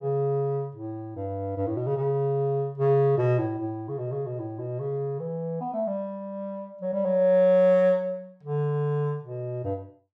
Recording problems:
none

